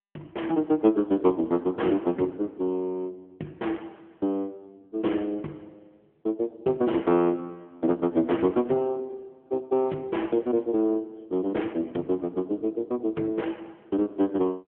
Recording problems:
telephone audio; 170 Hz to 3.3 kHz, AMR-NB

